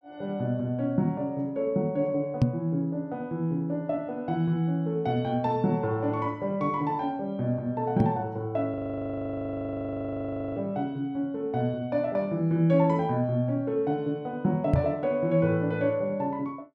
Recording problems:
microphone thump; at 2.5 s, at 8 s and at 15 s; peak +9 dB vs average level
frozen audio; at 8.5 s for 2 s

